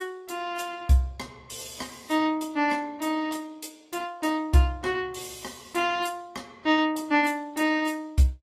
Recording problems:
lossy compression; AAC, log-spectral distance 3 dB

